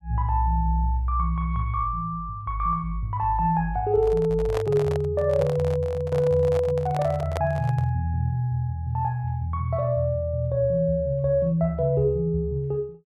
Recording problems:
microphone handling noise; from 4 to 8 s; peak -2 dB vs average level

